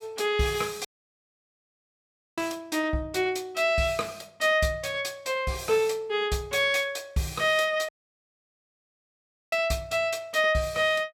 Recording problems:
dropout; at 1 s for 1.5 s and at 8 s for 1.5 s

